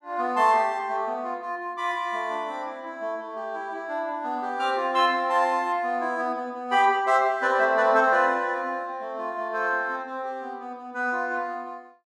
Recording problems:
none

